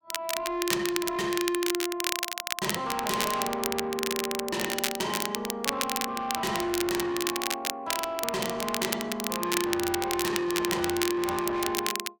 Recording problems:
distorted audio; soft clipping, signal-to-distortion ratio 7 dB
crackle; vinyl, SNR 2 dB

